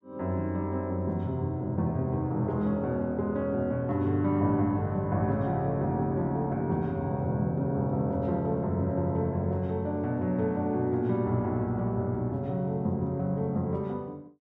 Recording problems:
none

